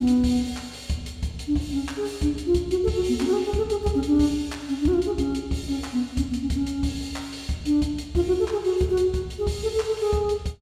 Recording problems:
none

